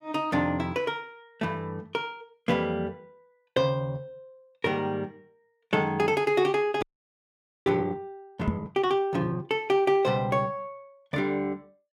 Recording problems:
audio freezing; at 7 s for 1 s
microphone thump; at 8.5 s; peak +4 dB vs average level

